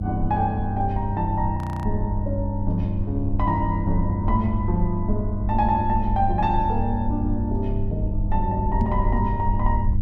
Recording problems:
hum; 50 Hz, harmonics up to 500 Hz, SNR 2 dB
low-frequency rumble; below 58 Hz, SNR 4 dB
frozen audio; at 1.5 s
knock on the microphone; at 9 s; peak +4 dB vs average level

